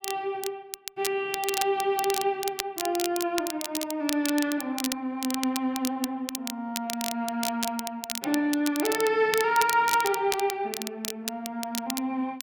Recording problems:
crackling; vinyl, SNR 6 dB

